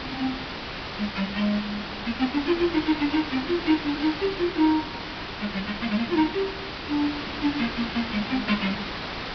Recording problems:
treble cut off; nothing above 5.5 kHz
background hiss; SNR 6 dB

